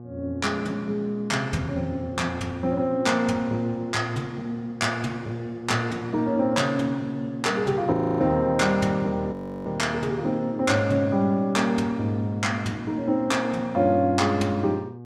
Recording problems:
hum; 60 Hz, harmonics up to 840 Hz, SNR 16 dB
audio freezing; at 8 s and at 9.5 s

